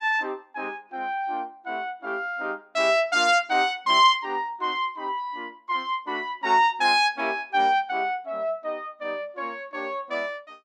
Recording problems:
none

